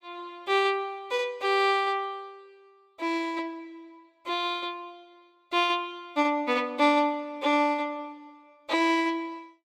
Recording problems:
none

